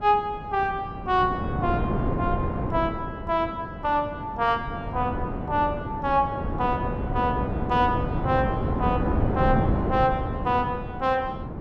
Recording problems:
wind noise; below 380 Hz, SNR 3 dB

